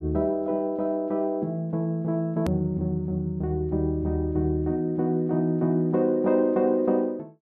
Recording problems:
hard cut with a click; at 2.5 s

